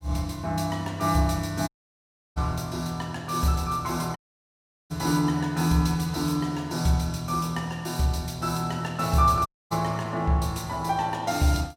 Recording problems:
audio cutting out; at 1.5 s for 0.5 s, at 4 s for 0.5 s and at 9.5 s

